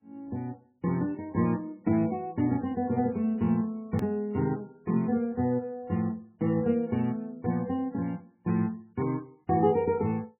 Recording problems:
codec artefacts; MP3, log-spectral distance 2 dB, nothing above 18.9 kHz
edit click; at 4 s

